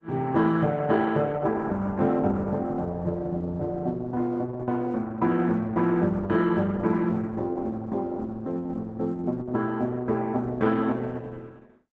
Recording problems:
lossy compression; Opus, log-spectral distance 3 dB

